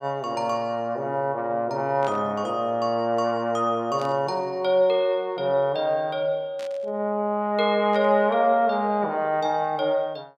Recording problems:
burst of static; 4 times, first at 2 s; peak -12 dB vs average level

